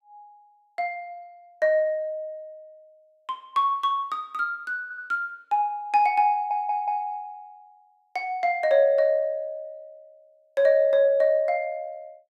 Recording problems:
stutter; at 5 s and at 6.5 s

